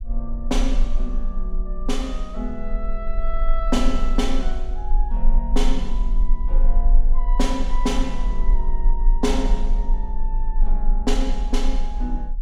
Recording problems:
rumble; below 34 Hz, strongest tone 20 Hz, SNR -4 dB

